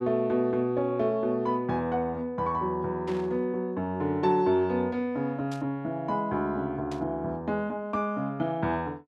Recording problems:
burst of static; at 3 s, at 5.5 s and at 7 s; peak -12 dB vs average level

